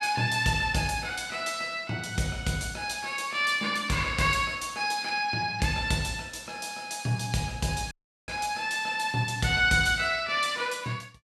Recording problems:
dropout; at 8 s

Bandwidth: 14 kHz